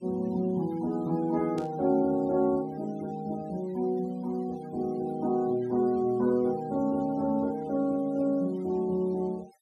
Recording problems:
noise reduction artefacts; signal-to-artefact ratio 25 dB
static burst; at 1.5 s; peak -14 dB vs average level

